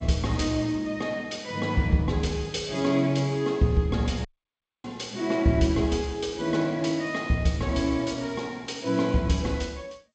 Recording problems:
lossy compression; G.722, log-spectral distance 2 dB, nothing above 7.3 kHz
dropout; at 4.5 s for 0.5 s

